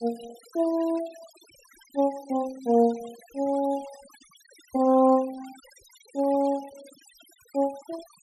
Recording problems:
denoising artefacts; signal-to-artefact ratio 24 dB

